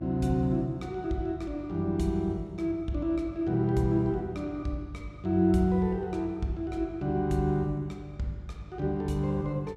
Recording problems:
electrical hum; 50 Hz, harmonics up to 550 Hz, SNR 20 dB

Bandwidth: 14.5 kHz